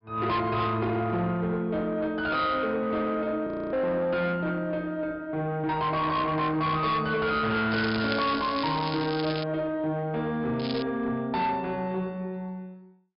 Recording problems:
treble cut off; nothing above 5.5 kHz
distortion; soft clipping, signal-to-distortion ratio 10 dB
audio freezing; at 3.5 s
crackle; from 7.5 to 9.5 s and at 11 s; loose cable, SNR 10 dB

